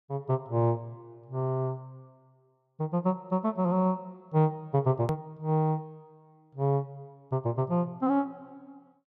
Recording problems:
click at an edit; at 5 s

